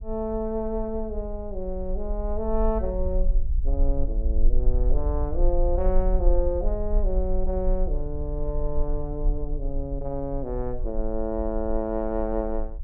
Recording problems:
low-frequency rumble; below 40 Hz, SNR 0 dB

